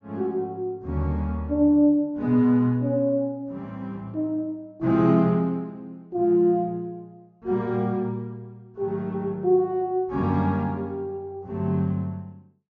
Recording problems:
low-pass filter; nothing above 6.9 kHz

